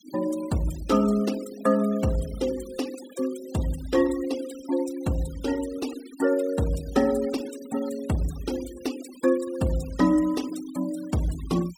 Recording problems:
noise reduction artefacts; signal-to-artefact ratio 17 dB

